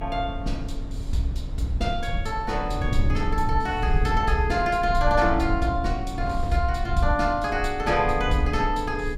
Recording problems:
rumble; below 74 Hz, SNR 6 dB
wind on the microphone; below 160 Hz, SNR 14 dB

